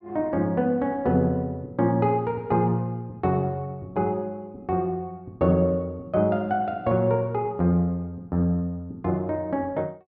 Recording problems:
none

